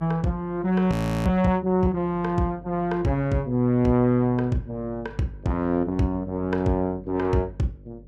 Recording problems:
electrical hum; 50 Hz, harmonics up to 600 Hz, SNR 21 dB
audio freezing; at 1 s

